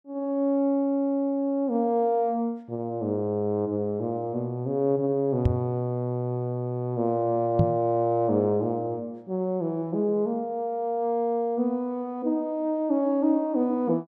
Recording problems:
microphone bump; at 5.5 s and at 7.5 s; peak +7 dB vs average level

